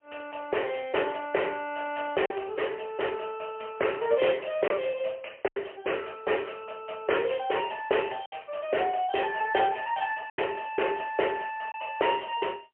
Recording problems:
telephone audio; 320 Hz to 3.1 kHz, AMR-NB, then MP3
lost packets; 2% of the sound replaced, filled with silence

